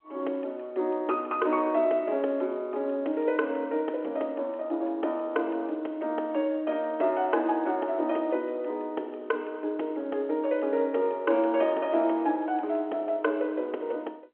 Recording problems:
phone line; 260 Hz to 3.7 kHz, G.711

